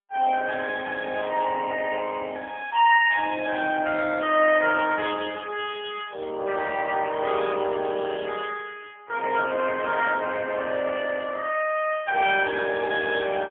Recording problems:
phone line; 320 Hz to 3.3 kHz, AMR-NB, then MP3

